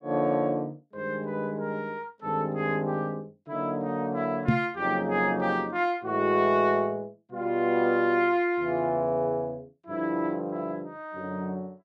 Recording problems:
microphone thump; at 4.5 s; peak +8 dB vs average level

